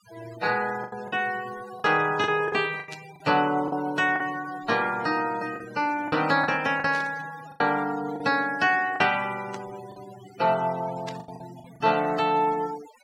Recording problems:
denoising artefacts; signal-to-artefact ratio 17 dB
packet loss; 8% of the sound replaced, filled with the last packet
static burst; 4 times, first at 3 s; peak -10 dB vs average level

